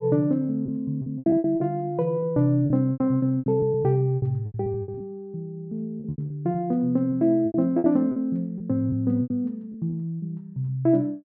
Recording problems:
packet loss; 13% of the sound replaced, filled with repeated pitch periods

